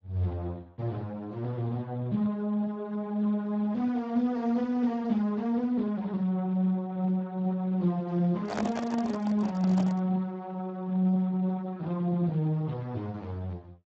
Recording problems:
codec artefacts; Speex, log-spectral distance 2 dB
microphone handling noise; from 8.5 to 10 s; peak +2 dB vs average level

